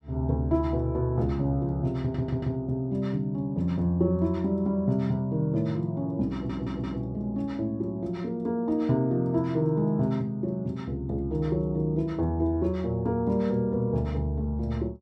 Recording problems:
audio stuttering; at 2 s and at 6.5 s

